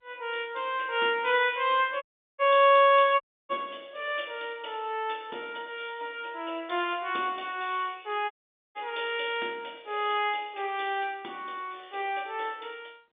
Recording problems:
phone line; 280 Hz to 3.6 kHz, G.711
audio cutting out; at 2 s, at 3 s and at 8.5 s

